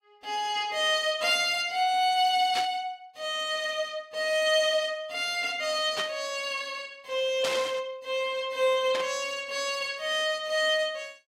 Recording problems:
lossy codec; AAC, log-spectral distance 2 dB, nothing above 15.5 kHz
burst of static; 4 times, first at 2.5 s; peak -1 dB vs average level

